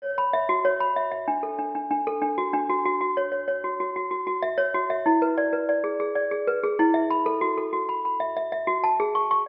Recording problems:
treble missing; nothing above 5.5 kHz

